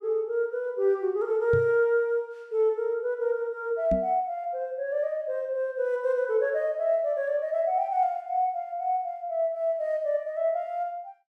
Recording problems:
microphone bump; at 1.5 s and at 4 s; peak 0 dB vs average level

